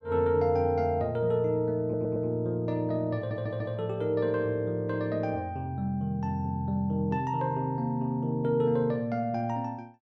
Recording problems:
stutter; at 2 s and at 3 s

